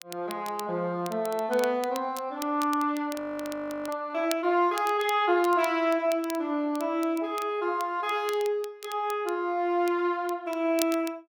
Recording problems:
crackling; vinyl, SNR 16 dB
audio freezing; at 3 s for 0.5 s

